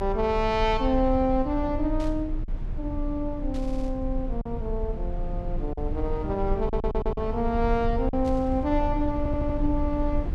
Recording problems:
rumble; below 64 Hz, strongest tone 30 Hz, SNR 5 dB
lost packets; 2% of the sound replaced, filled with silence
static burst; at 2 s, at 3.5 s and at 8 s; peak -14 dB vs average level
audio stuttering; at 3.5 s, at 6.5 s and at 9 s

